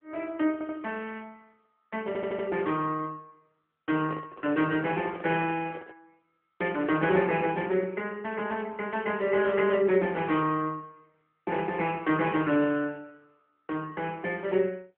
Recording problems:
telephone audio; 170 Hz to 3.2 kHz, AMR-NB
stutter; at 0.5 s and at 2 s
microphone handling noise; from 4 to 6 s; peak -5 dB vs average level

